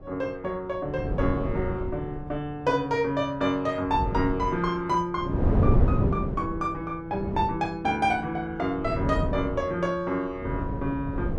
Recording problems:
wind on the microphone; below 230 Hz, SNR 2 dB

